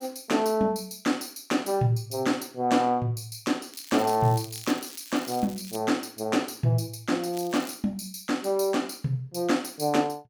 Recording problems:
crackle; from 3.5 to 6 s and at 7.5 s; loose cable, SNR 17 dB

